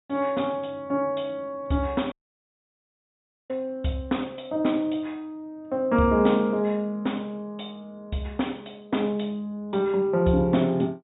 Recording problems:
treble missing; nothing above 4 kHz
dropout; at 2 s for 1.5 s

